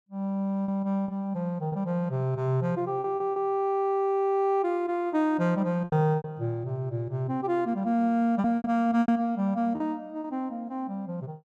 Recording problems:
packet loss; 6% of the sound replaced, filled with repeated pitch periods

